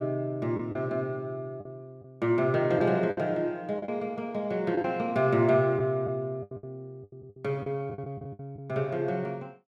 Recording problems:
lost packets; 8% of the sound replaced, filled with the last packet

